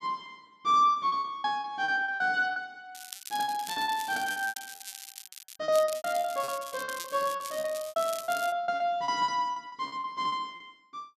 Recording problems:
lost packets; 17% of the sound replaced, filled with repeated pitch periods
crackling; from 3 to 5.5 s and from 5.5 to 8.5 s; loose cable, SNR 12 dB

